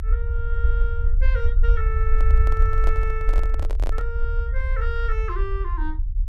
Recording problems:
low-frequency rumble; below 56 Hz, SNR -8 dB
microphone handling noise; from 2 to 4 s; peak +1 dB vs average level

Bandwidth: 14.5 kHz